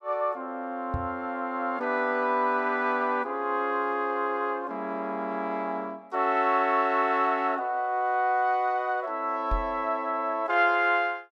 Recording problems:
microphone thump; at 1 s and at 9.5 s; peak -1 dB vs average level

